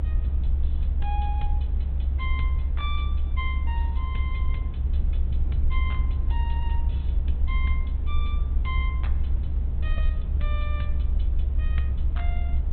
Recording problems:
low-pass filter; nothing above 4 kHz
hiss; SNR 15 dB
rumble; below 68 Hz, SNR -11 dB

